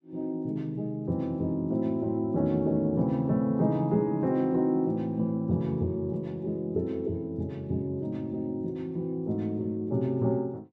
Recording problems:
none

